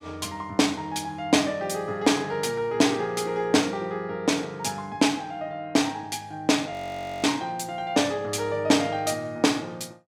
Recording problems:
frozen audio; at 6.5 s for 0.5 s

